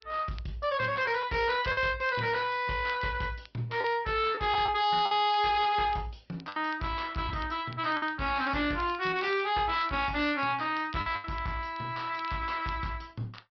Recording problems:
treble cut off; nothing above 5.2 kHz
lossy compression; Opus, log-spectral distance 3 dB
distortion; soft clipping, signal-to-distortion ratio 7 dB
crackle; vinyl, SNR 24 dB
packet loss; 4% of the sound replaced, filled with the last packet

